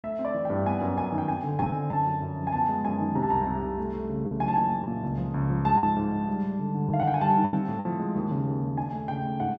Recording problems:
packet loss; 4% of the sound replaced, filled with the last packet

